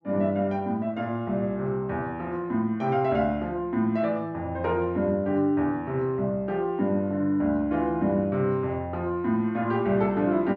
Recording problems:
none

